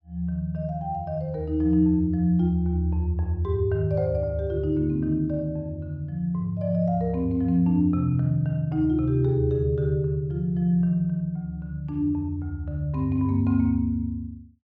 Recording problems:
none

